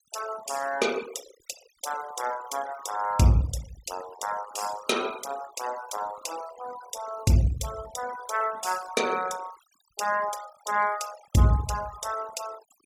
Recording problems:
noise reduction artefacts; signal-to-artefact ratio 13 dB

